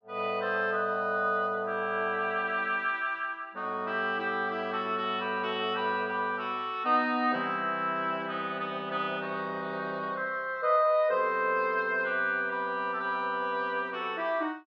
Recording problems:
none

